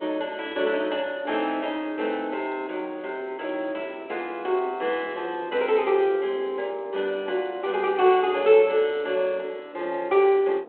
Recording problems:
telephone audio; 320 Hz to 3.9 kHz, G.726
wind noise; below 580 Hz, SNR 21 dB

